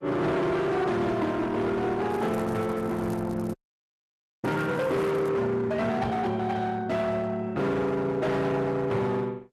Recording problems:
lossy compression; Opus, log-spectral distance 3 dB, nothing above 12 kHz
distortion; hard clipping, uneven, signal-to-distortion ratio 7 dB
crackling; from 2 to 5.5 s; loose cable, SNR 26 dB
microphone thump; at 2.5 s and at 6 s; peak +1 dB vs average level
frozen audio; at 3.5 s for 1 s

